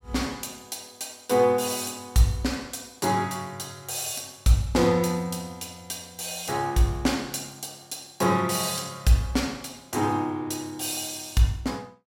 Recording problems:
none

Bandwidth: 16 kHz